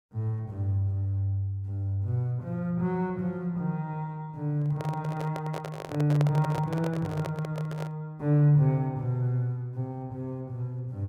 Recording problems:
handling noise; from 4.5 to 8 s; peak -1 dB vs average level

